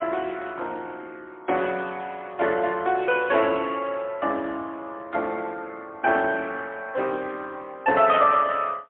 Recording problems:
telephone audio; 280 Hz to 3.3 kHz, AMR-NB, then MP3

